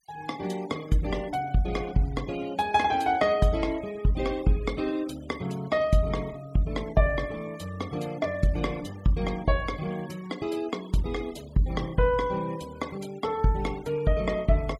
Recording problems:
denoising artefacts; signal-to-artefact ratio 21 dB

